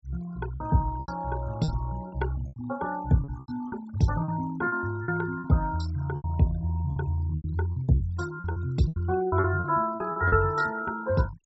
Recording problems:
low-pass filter; nothing above 8 kHz
noise reduction artefacts; signal-to-artefact ratio 19 dB
packet loss; 12% of the sound replaced, filled with repeated pitch periods

